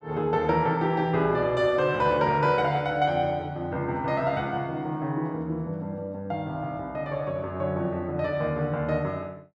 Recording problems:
none

